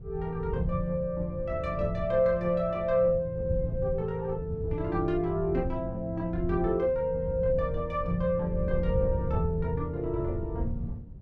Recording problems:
wind on the microphone; below 110 Hz, SNR 7 dB

